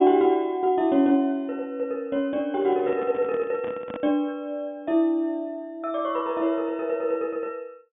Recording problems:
treble cut off; nothing above 3.5 kHz
microphone handling noise; from 2.5 to 4 s; peak -7 dB vs average level

